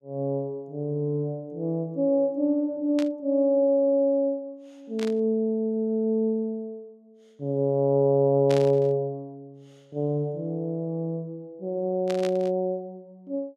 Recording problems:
burst of static; 4 times, first at 3 s; peak -7 dB vs average level

